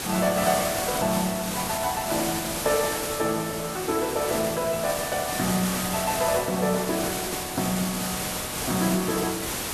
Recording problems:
hiss; slope -2 dB per octave, SNR 2 dB

